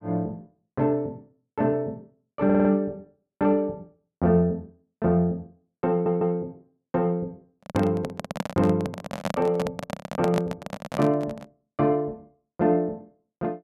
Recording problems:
audio stuttering; at 2.5 s and at 6 s
microphone handling noise; from 7.5 to 11 s; peak +2 dB vs average level

